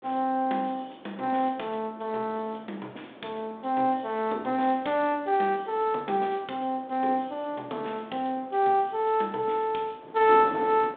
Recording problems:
telephone audio; 220 Hz to 3.7 kHz, G.726
wind noise; below 770 Hz, SNR 20 dB

